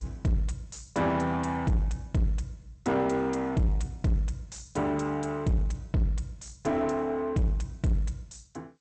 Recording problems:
codec artefacts; G.722, log-spectral distance 3 dB, nothing above 8.2 kHz
distortion; soft clipping, signal-to-distortion ratio 9 dB

